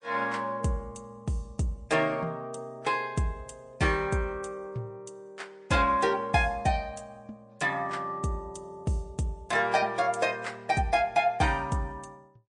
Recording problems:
codec artefacts; MP3, log-spectral distance 2 dB, nothing above 9.2 kHz

